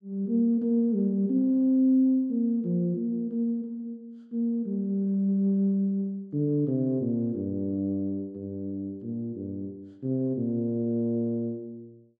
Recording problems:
none

